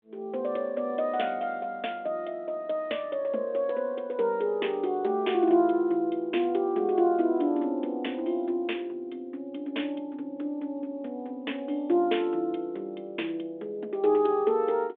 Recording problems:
phone line; 260 Hz to 3.6 kHz, G.726

